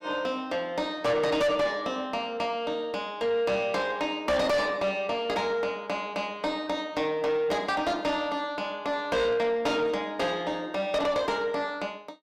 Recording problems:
distortion; soft clipping, signal-to-distortion ratio 6 dB

